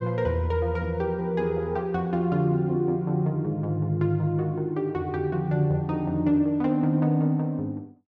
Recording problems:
none

